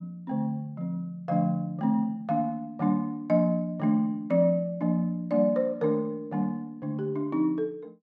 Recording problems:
none

